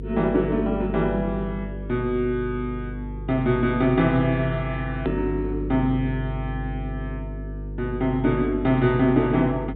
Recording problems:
treble missing; nothing above 4 kHz
hum; 50 Hz, harmonics up to 500 Hz, SNR 9 dB
edit click; at 5 s

